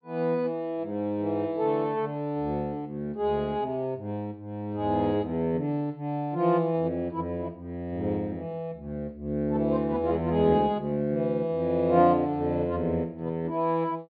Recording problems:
treble cut off; nothing above 4.7 kHz

